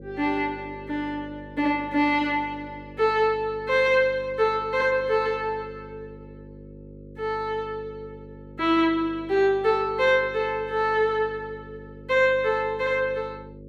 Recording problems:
hum; 50 Hz, harmonics up to 550 Hz, SNR 19 dB

